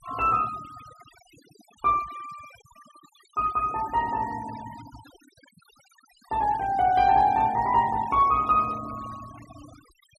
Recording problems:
noise reduction artefacts; signal-to-artefact ratio 22 dB

